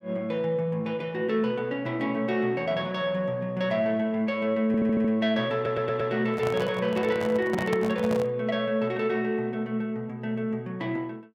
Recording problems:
stutter; at 4.5 s and at 5.5 s
microphone handling noise; from 6.5 to 8.5 s; peak -1 dB vs average level

